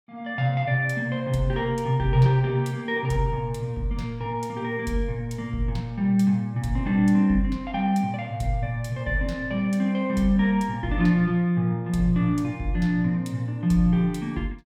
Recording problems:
none

